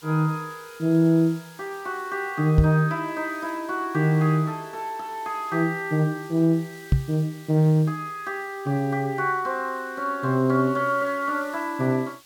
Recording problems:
background hiss; slope +1 dB per octave, SNR 25 dB
microphone thump; at 2.5 s and at 7 s; peak +8 dB vs average level

